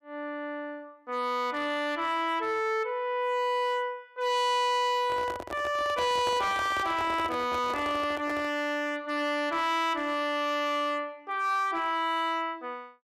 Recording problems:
distorted audio; hard clipping, signal-to-distortion ratio 10 dB
microphone handling noise; from 5 to 8.5 s; peak -4 dB vs average level

